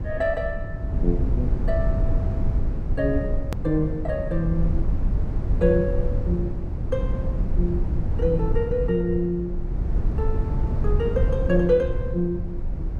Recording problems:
rumble; below 96 Hz, SNR 1 dB
edit click; at 3.5 s

